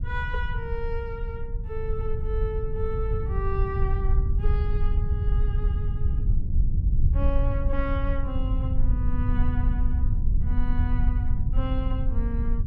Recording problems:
low-frequency rumble; below 76 Hz, SNR -8 dB

